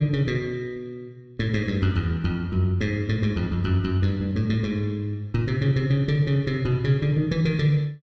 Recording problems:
none

